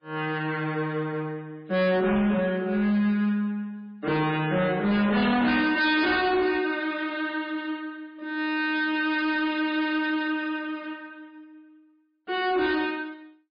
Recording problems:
lossy compression; MP3, log-spectral distance 2 dB, nothing above 4.4 kHz
distortion; hard clipping, signal-to-distortion ratio 10 dB

